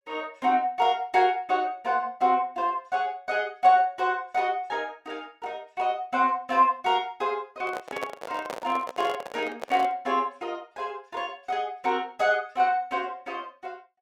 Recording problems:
microphone handling noise; from 7.5 to 10 s; peak -2 dB vs average level

